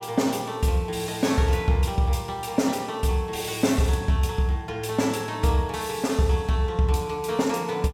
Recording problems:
none

